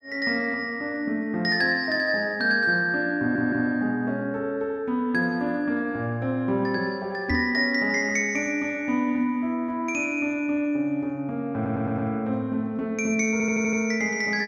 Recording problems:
audio stuttering; at 3 s, at 12 s and at 13 s
microphone thump; at 7.5 s; peak +1 dB vs average level

